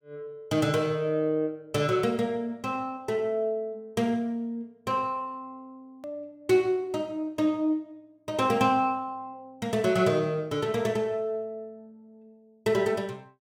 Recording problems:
click at an edit; at 6 s

